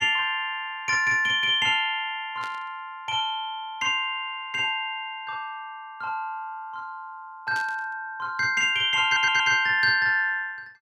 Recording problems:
static burst; at 2.5 s and at 7.5 s; peak -12 dB vs average level
stutter; at 9 s

